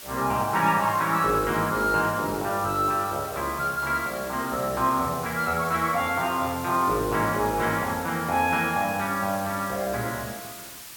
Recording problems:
background hiss; slope +1 dB per octave, SNR 13 dB

